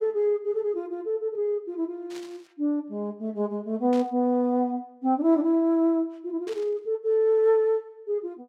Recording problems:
burst of static; at 2 s, at 4 s and at 6.5 s; peak -14 dB vs average level

